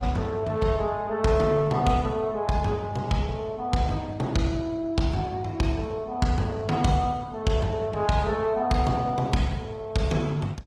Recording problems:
codec artefacts; Opus, log-spectral distance 2 dB

